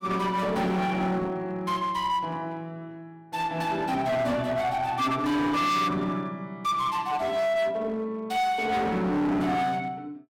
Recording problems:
distorted audio; hard clipping, uneven, signal-to-distortion ratio 7 dB

